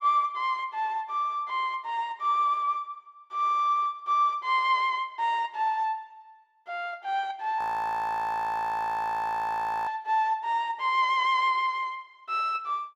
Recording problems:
frozen audio; at 7.5 s for 2.5 s

